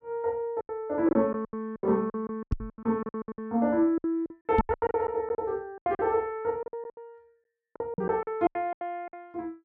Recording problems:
packet loss; 20% of the sound replaced, filled with silence
knock on the microphone; at 2.5 s, at 4.5 s and at 8 s; peak +7 dB vs average level

